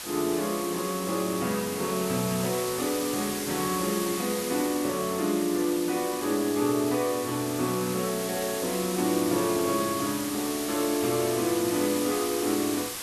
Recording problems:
hiss; slope 0 dB per octave, SNR 6 dB

